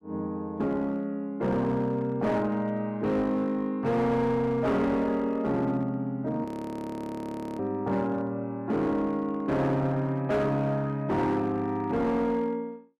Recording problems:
distortion; hard clipping, uneven, signal-to-distortion ratio 11 dB
audio freezing; at 6.5 s for 1 s

